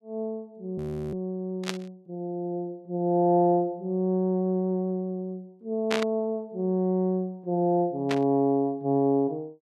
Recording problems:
audio freezing; at 1 s
burst of static; at 1.5 s, at 6 s and at 8 s; peak +2 dB vs average level

